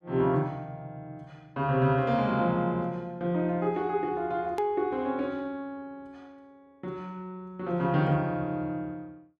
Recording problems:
hard cut with a click; at 4.5 s

